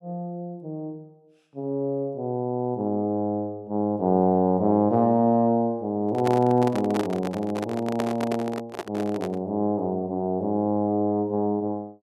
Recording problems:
microphone handling noise; from 6 to 9.5 s; peak -1 dB vs average level

